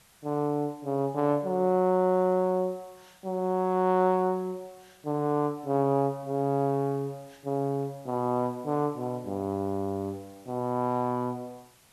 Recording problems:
hiss; slope -1 dB per octave, SNR 29 dB

